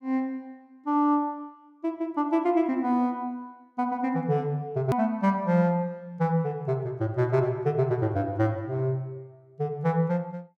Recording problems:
click at an edit; at 5 s

